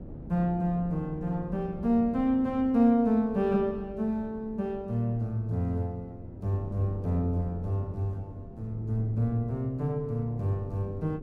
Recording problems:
wind on the microphone; below 270 Hz, SNR 15 dB

